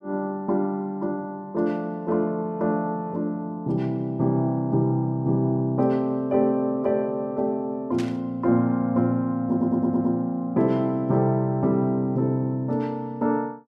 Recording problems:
burst of static; at 8 s; peak -9 dB vs average level
audio stuttering; at 9.5 s

